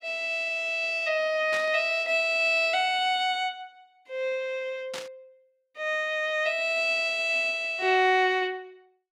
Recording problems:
static burst; at 1.5 s and at 5 s; peak -7 dB vs average level

